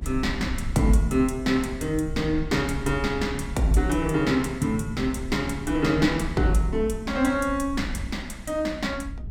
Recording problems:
low-frequency rumble; below 82 Hz, SNR 11 dB

